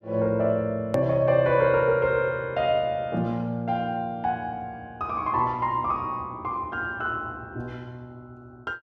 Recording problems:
edit click; at 1 s

